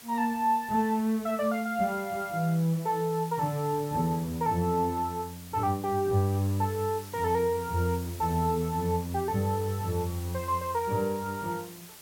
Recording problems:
background hiss; slope 0 dB per octave, SNR 17 dB

